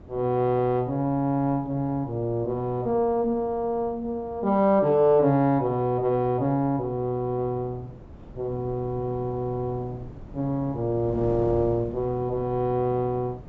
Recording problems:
treble cut off; nothing above 8 kHz
wind on the microphone; below 320 Hz, SNR 19 dB

